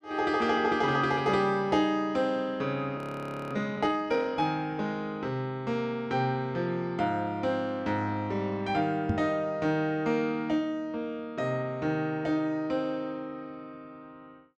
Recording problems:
frozen audio; at 3 s for 0.5 s
knock on the microphone; at 9 s; peak +4 dB vs average level

